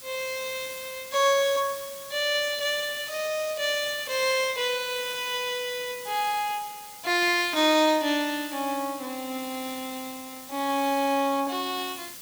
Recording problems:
hiss; slope +1 dB per octave, SNR 13 dB

